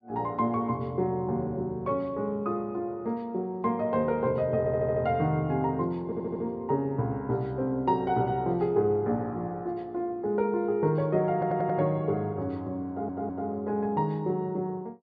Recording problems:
treble cut off; nothing above 6.8 kHz
audio stuttering; 4 times, first at 4.5 s

